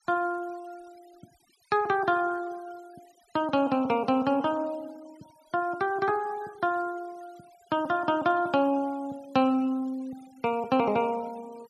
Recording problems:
denoising artefacts; signal-to-artefact ratio 27 dB

